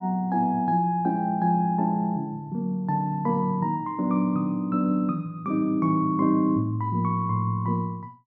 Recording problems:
none

